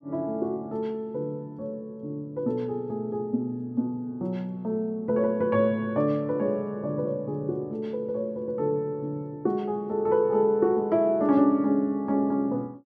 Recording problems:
none

